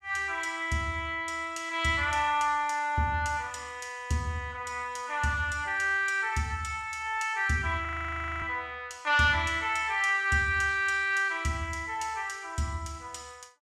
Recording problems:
frozen audio; at 8 s for 0.5 s

